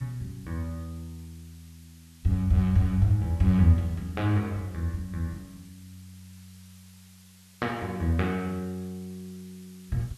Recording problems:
background hiss; slope +2 dB per octave, SNR 28 dB

